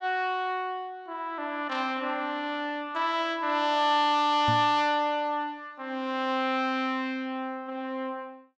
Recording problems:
microphone thump; at 4.5 s; peak 0 dB vs average level

